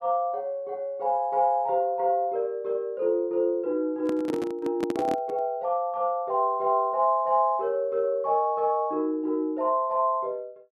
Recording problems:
handling noise; from 4 to 5.5 s; peak -1 dB vs average level

